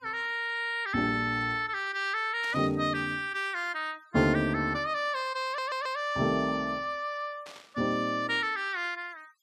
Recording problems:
denoising artefacts; signal-to-artefact ratio 27 dB
burst of static; at 2.5 s and at 7.5 s; peak -12 dB vs average level
stutter; at 5.5 s

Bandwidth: 14.5 kHz